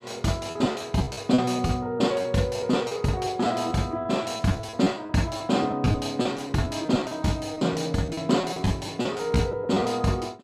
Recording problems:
lost packets; 12% of the sound replaced, filled with repeated pitch periods

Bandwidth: 14 kHz